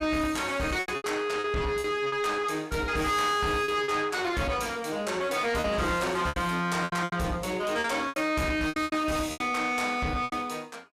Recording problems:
distortion; soft clipping, signal-to-distortion ratio 10 dB
lost packets; 10% of the sound replaced, filled with repeated pitch periods

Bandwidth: 15 kHz